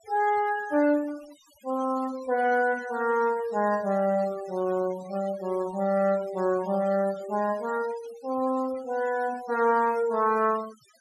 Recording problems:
denoising artefacts; signal-to-artefact ratio 19 dB

